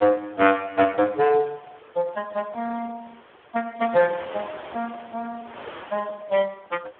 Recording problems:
phone line; 260 Hz to 2.8 kHz, Speex
wind noise; below 2 kHz, SNR 19 dB

